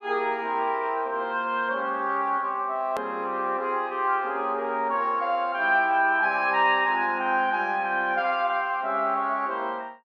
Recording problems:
click at an edit; at 3 s

